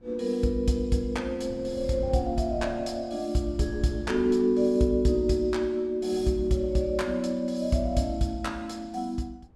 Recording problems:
wind noise; below 230 Hz, SNR 18 dB

